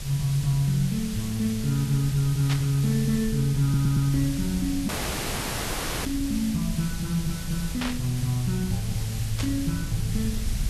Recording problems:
background hiss; SNR 12 dB
low-frequency rumble; below 100 Hz, SNR 11 dB
burst of static; 4 times, first at 2.5 s; peak -1 dB vs average level
stutter; at 3.5 s
audio cutting out; at 5 s for 1 s

